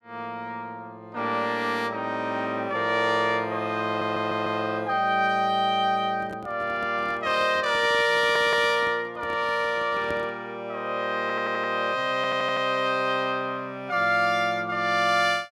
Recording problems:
audio stuttering; 4 times, first at 4 s
microphone handling noise; from 6 to 10 s; peak -8 dB vs average level

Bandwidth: 14.5 kHz